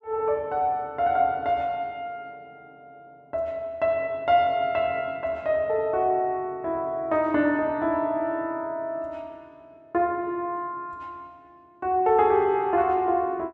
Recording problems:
none

